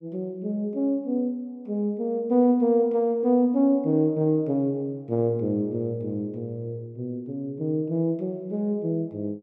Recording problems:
none

